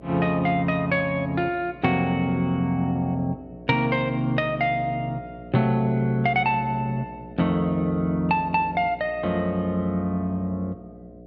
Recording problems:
mains hum; 60 Hz, harmonics up to 720 Hz, SNR 19 dB

